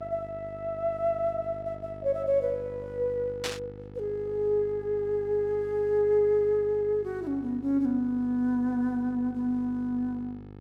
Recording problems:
hum; 50 Hz, harmonics up to 1.3 kHz, SNR 17 dB
static burst; at 3.5 s; peak 0 dB vs average level

